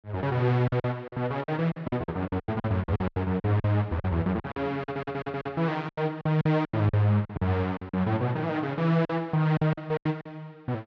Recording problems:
packet loss; 15% of the sound replaced, filled with silence
audio stuttering; at 5 s

